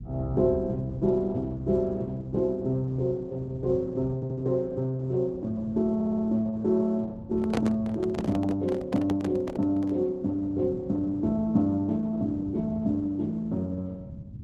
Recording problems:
lossy compression; Opus, log-spectral distance 2 dB
low-frequency rumble; below 170 Hz, SNR 14 dB
audio stuttering; at 4 s and at 6 s
handling noise; from 7.5 to 10 s; peak +1 dB vs average level

